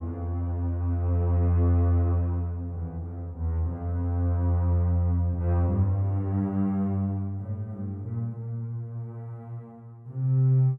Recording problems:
none

